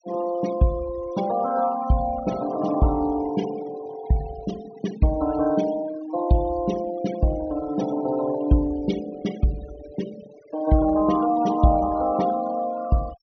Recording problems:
treble missing; nothing above 6.4 kHz
noise reduction artefacts; signal-to-artefact ratio 17 dB

